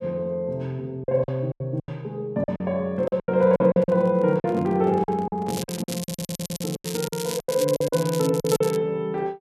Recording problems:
packet loss; 13% of the sound replaced, filled with silence
handling noise; from 3 to 6.5 s; peak -9 dB vs average level
crackling; from 5.5 to 9 s; loose cable, SNR 10 dB
audio stuttering; at 6 s

